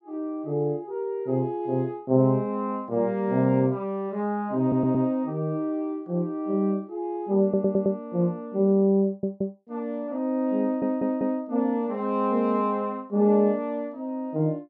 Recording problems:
audio stuttering; 4 times, first at 4.5 s

